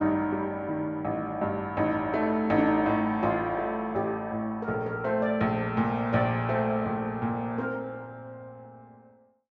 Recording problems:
treble cut off; nothing above 8 kHz

